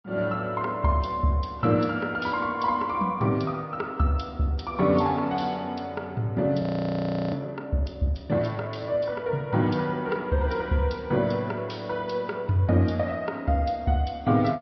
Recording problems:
treble cut off; nothing above 5.3 kHz
lossy codec; MP3, log-spectral distance 2 dB
frozen audio; at 6.5 s for 0.5 s

